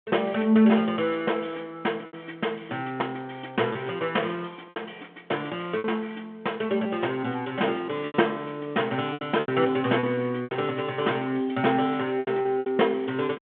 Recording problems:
phone line; 240 Hz to 3.4 kHz, G.726
packet loss; 6% of the sound replaced, filled with repeated pitch periods

